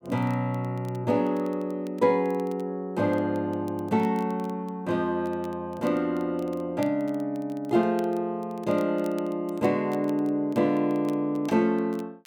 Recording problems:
crackling; vinyl, SNR 28 dB

